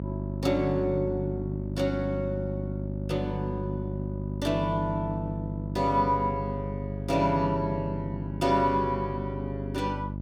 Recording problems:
electrical hum; 50 Hz, harmonics up to 650 Hz, SNR 4 dB

